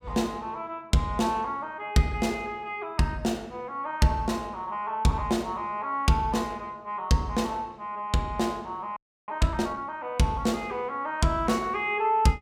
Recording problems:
frozen audio; at 9 s

